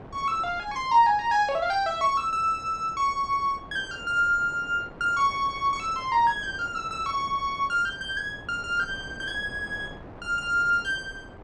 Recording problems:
wind noise; below 740 Hz, SNR 19 dB

